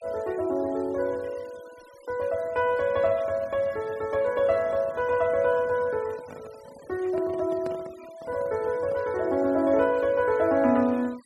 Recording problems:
noise reduction artefacts; signal-to-artefact ratio 25 dB
handling noise; from 6 to 9 s; peak -9 dB vs average level

